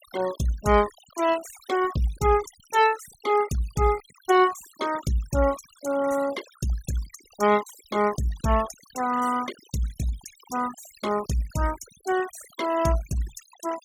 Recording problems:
denoising artefacts; signal-to-artefact ratio 16 dB

